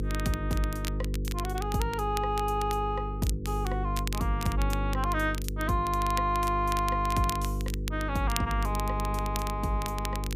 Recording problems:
hum; 50 Hz, harmonics up to 500 Hz, SNR 3 dB
crackle; vinyl, SNR 11 dB

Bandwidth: 15 kHz